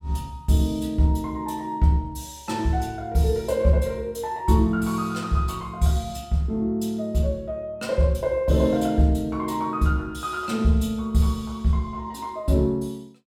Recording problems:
none

